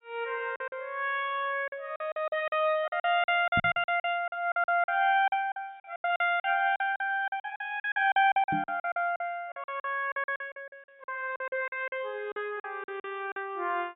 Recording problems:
treble missing; nothing above 4 kHz
lost packets; 17% of the sound replaced, filled with silence
microphone thump; at 3.5 s and at 8.5 s; peak 0 dB vs average level

